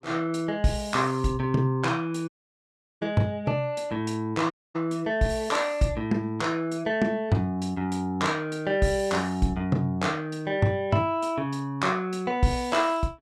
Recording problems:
dropout; at 2.5 s for 0.5 s and at 4.5 s

